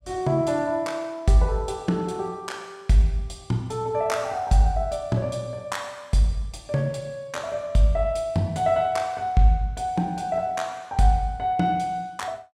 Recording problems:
none

